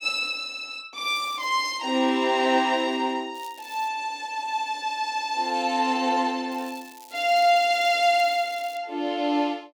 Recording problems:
crackling; at 1 s, at 3.5 s and from 6.5 to 9 s; loose cable, SNR 23 dB

